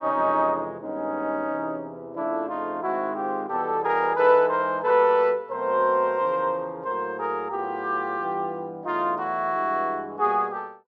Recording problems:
none

